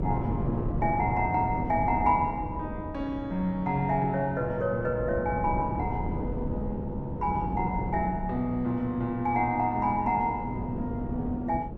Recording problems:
wind noise; below 290 Hz, SNR 6 dB

